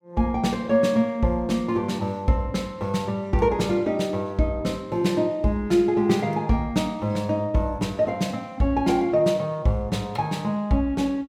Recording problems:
none

